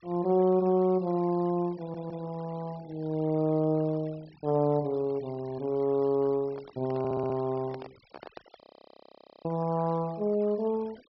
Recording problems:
treble missing; nothing above 5.5 kHz
denoising artefacts; signal-to-artefact ratio 25 dB
audio stuttering; at 2 s and at 7 s
handling noise; from 6.5 to 8.5 s; peak -11 dB vs average level
audio freezing; at 8.5 s for 1 s

